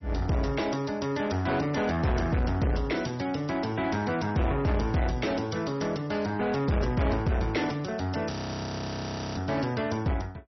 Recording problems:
lossy compression; MP3, log-spectral distance 6 dB, nothing above 5.8 kHz
distorted audio; soft clipping, signal-to-distortion ratio 7 dB
audio freezing; at 8.5 s for 1 s

